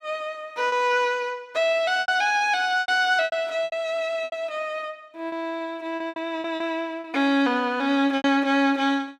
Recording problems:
lost packets; 9% of the sound replaced, filled with repeated pitch periods

